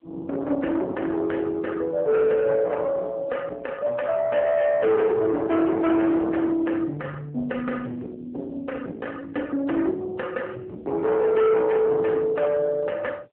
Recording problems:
telephone audio; 240 Hz to 2.5 kHz, AMR-NB
distorted audio; soft clipping, signal-to-distortion ratio 8 dB

